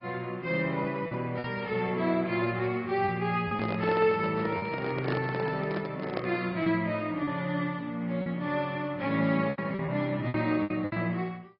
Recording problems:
treble missing; nothing above 4.9 kHz
codec artefacts; Vorbis, then AAC, log-spectral distance 2 dB
lost packets; 6% of the sound replaced, filled with repeated pitch periods
microphone handling noise; from 3.5 to 6.5 s; peak 0 dB vs average level

